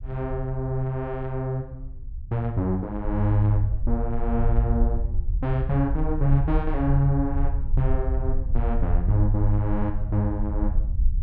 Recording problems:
low-frequency rumble; below 58 Hz, SNR 2 dB

